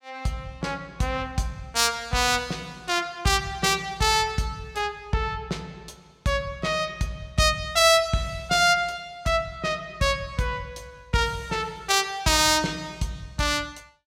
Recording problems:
none

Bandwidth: 17 kHz